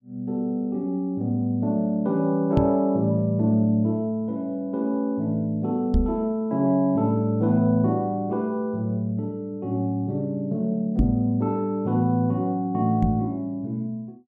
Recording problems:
microphone bump; 4 times, first at 2.5 s; peak +5 dB vs average level

